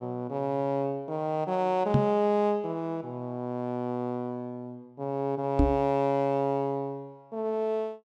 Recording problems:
knock on the microphone; at 2 s and at 5.5 s; peak +8 dB vs average level

